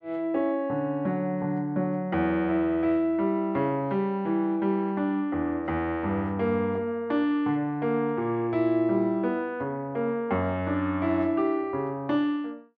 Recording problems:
none

